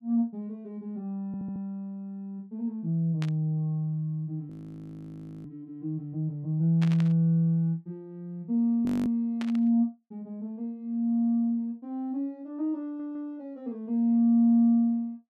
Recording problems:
stutter; at 1.5 s and at 13 s
burst of static; at 3 s, at 7 s and at 9.5 s; peak -7 dB vs average level
frozen audio; at 4.5 s for 1 s and at 9 s

